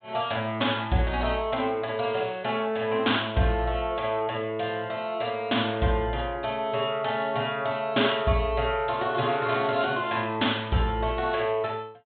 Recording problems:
low-pass filter; nothing above 4 kHz

